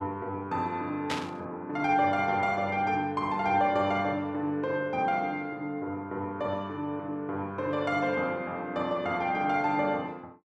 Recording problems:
burst of static; at 1 s; peak +1 dB vs average level

